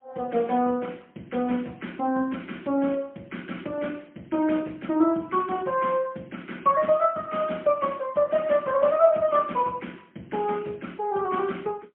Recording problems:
phone line; 190 Hz to 3.3 kHz, AMR-NB, then MP3

